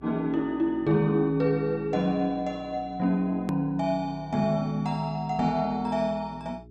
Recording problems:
electrical hum; 60 Hz, harmonics up to 420 Hz, SNR 23 dB
hard cut with a click; at 3.5 s

